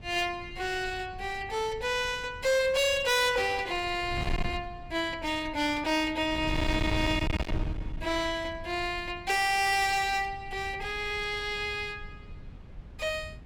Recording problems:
distorted audio; hard clipping, uneven, signal-to-distortion ratio 7 dB
wind noise; below 170 Hz, SNR 11 dB

